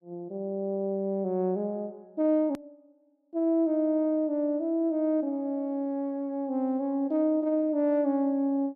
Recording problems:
click at an edit; at 2.5 s

